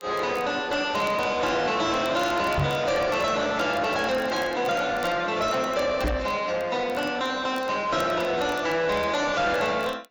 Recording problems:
codec artefacts; AAC, log-spectral distance 3 dB
distortion; soft clipping, signal-to-distortion ratio 5 dB
crackling; vinyl, SNR 25 dB
knock on the microphone; at 2.5 s and at 6 s; peak +5 dB vs average level

